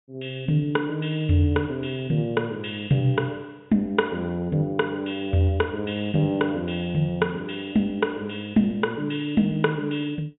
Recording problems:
treble cut off; nothing above 4 kHz

